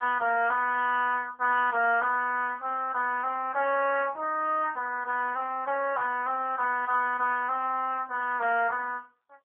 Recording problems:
telephone audio; 260 Hz to 3.2 kHz, AMR-NB

